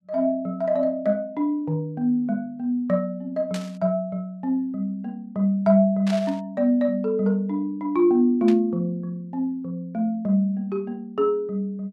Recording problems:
static burst; at 3.5 s, at 6 s and at 8.5 s; peak -7 dB vs average level

